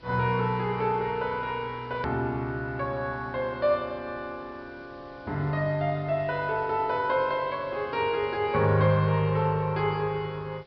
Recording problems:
treble missing; nothing above 5.5 kHz
hiss; SNR 27 dB
hard cut with a click; at 2 s

